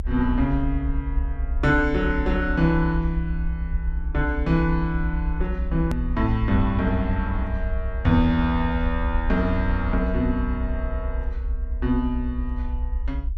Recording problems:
low-frequency rumble; below 64 Hz, SNR 4 dB
click at an edit; at 6 s

